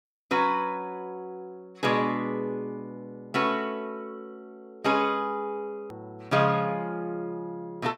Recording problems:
click at an edit; at 6 s

